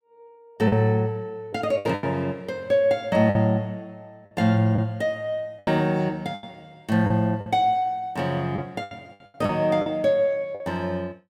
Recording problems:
lost packets; 7% of the sound replaced, filled with the last packet

